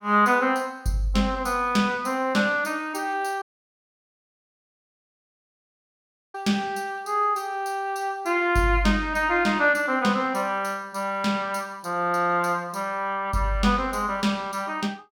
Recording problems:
audio cutting out; at 3.5 s for 3 s

